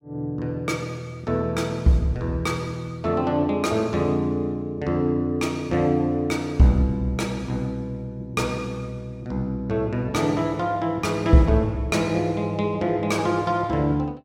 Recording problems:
none

